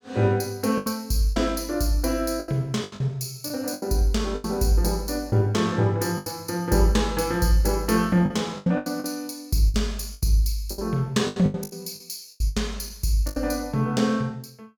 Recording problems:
lost packets; 11% of the sound replaced, filled with the last packet

